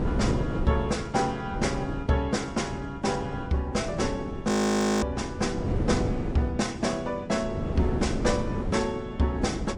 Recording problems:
lossy codec; MP3, log-spectral distance 2 dB
wind on the microphone; below 340 Hz, SNR 5 dB
frozen audio; at 4.5 s for 0.5 s

